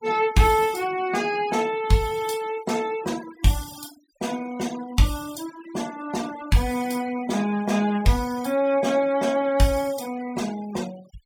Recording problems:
denoising artefacts; signal-to-artefact ratio 18 dB

